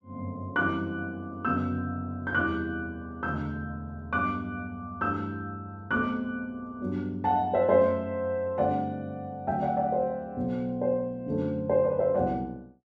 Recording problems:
none

